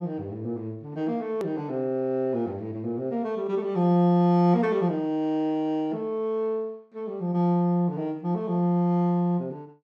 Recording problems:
edit click; at 1.5 s

